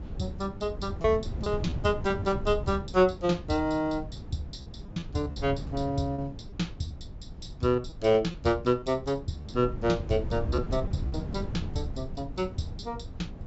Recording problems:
treble missing; nothing above 7.6 kHz
wind noise; below 160 Hz, SNR 9 dB
lost packets; 6% of the sound replaced, filled with repeated pitch periods

